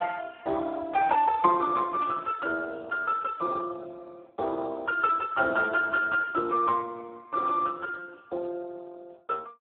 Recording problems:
phone line; 280 Hz to 2.2 kHz, Speex
static burst; at 2 s and at 6 s; peak -12 dB vs average level

